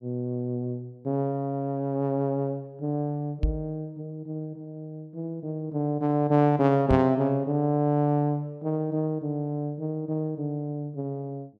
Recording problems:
microphone thump; at 3.5 s and at 7 s; peak +5 dB vs average level

